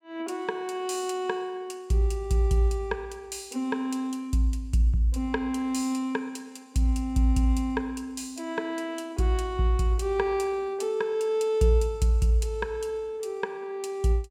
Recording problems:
none

